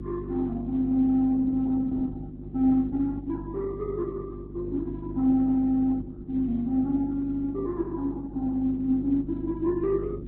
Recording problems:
lossy compression; Opus, then Vorbis, log-spectral distance 2 dB, nothing above 4 kHz
hum; 50 Hz, harmonics up to 450 Hz, SNR 12 dB

